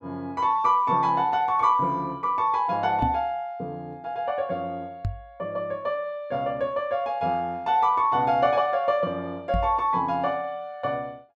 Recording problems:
microphone thump; at 3 s, at 5 s and at 9.5 s; peak +1 dB vs average level

